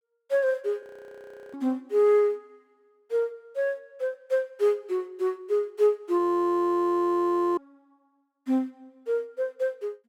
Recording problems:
frozen audio; at 1 s for 0.5 s and at 6 s for 1.5 s

